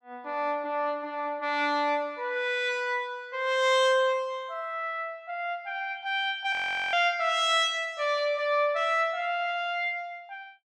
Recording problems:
audio freezing; at 6.5 s

